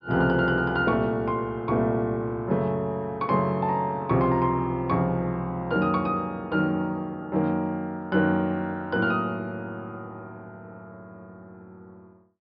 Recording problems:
low-pass filter; nothing above 5.3 kHz

